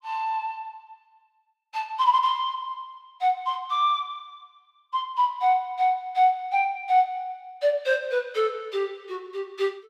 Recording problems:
none

